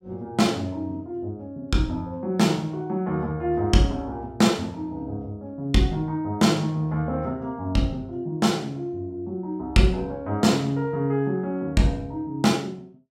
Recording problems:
none

